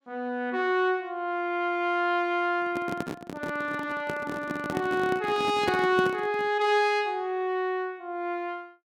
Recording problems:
handling noise; from 2.5 to 6.5 s; peak +1 dB vs average level

